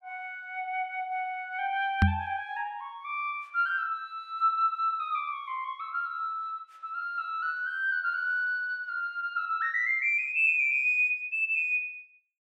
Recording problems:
microphone bump; at 2 s; peak +9 dB vs average level

